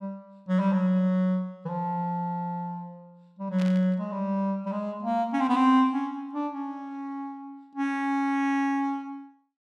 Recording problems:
static burst; at 3.5 s; peak -10 dB vs average level

